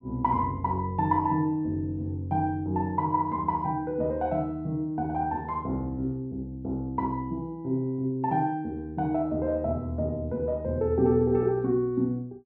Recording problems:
none

